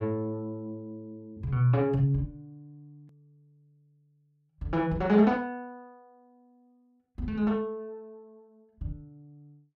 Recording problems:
hard cut with a click; at 3 s

